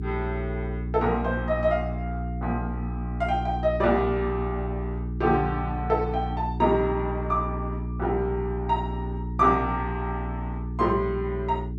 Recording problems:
hum; 60 Hz, harmonics up to 420 Hz, SNR 5 dB

